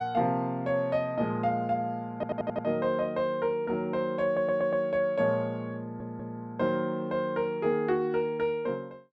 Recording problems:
stutter; at 2 s, at 4.5 s and at 6 s

